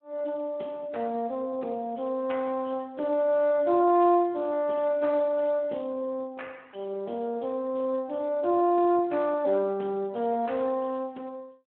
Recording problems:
phone line; 190 Hz to 3 kHz, Speex

